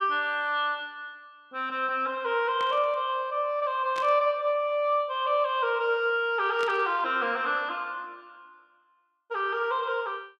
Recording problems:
burst of static; at 2.5 s, at 4 s and at 6.5 s; peak -8 dB vs average level

